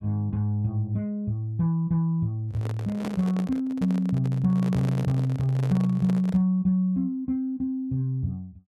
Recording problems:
microphone handling noise; from 2.5 to 6.5 s; peak -4 dB vs average level

